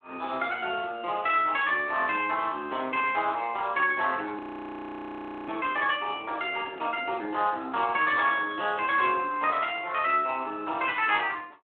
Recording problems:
phone line; 280 Hz to 3.7 kHz, Speex
audio freezing; at 4.5 s for 1 s
handling noise; at 6.5 s; peak -16 dB vs average level

